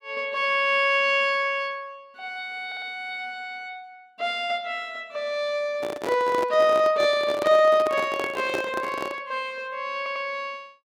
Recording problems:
audio stuttering; at 2.5 s and at 10 s
microphone handling noise; from 5.5 to 9.5 s; peak -1 dB vs average level

